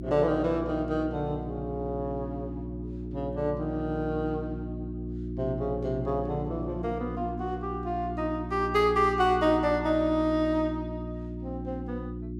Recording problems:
electrical hum; 60 Hz, harmonics up to 360 Hz, SNR 7 dB

